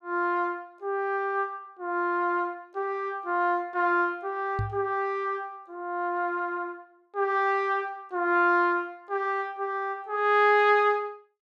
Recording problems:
microphone bump; at 4.5 s; peak -1 dB vs average level

